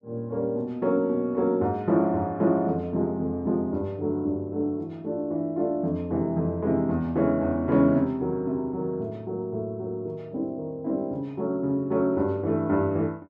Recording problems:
none

